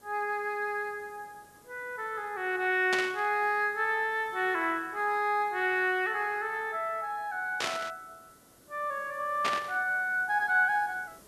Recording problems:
hiss; SNR 27 dB
static burst; at 3 s, at 7.5 s and at 9.5 s; peak +2 dB vs average level

